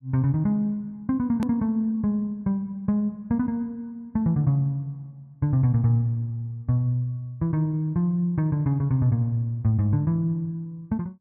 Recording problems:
hard cut with a click; at 1.5 s

